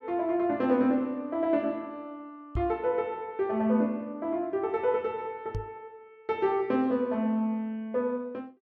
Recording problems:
microphone bump; at 2.5 s and at 5.5 s; peak -1 dB vs average level

